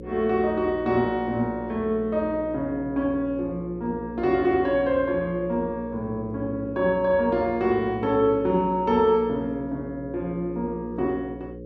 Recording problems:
hum; 60 Hz, harmonics up to 540 Hz, SNR 14 dB

